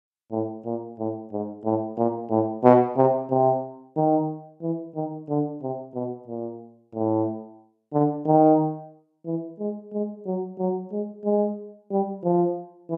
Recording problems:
none

